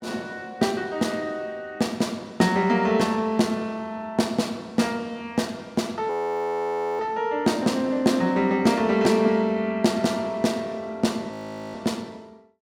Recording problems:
frozen audio; at 6 s for 1 s and at 11 s

